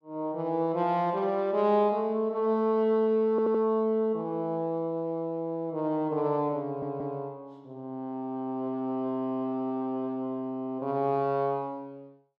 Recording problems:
stutter; at 3.5 s and at 6.5 s

